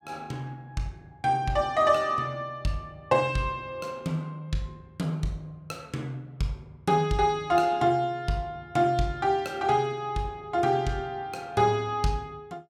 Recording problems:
none

